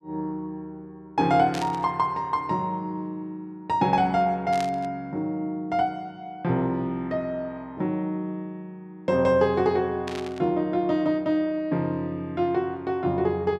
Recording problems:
burst of static; at 1.5 s, at 4.5 s and at 10 s; peak -5 dB vs average level

